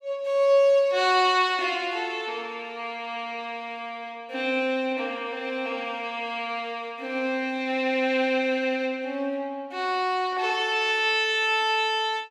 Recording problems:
none

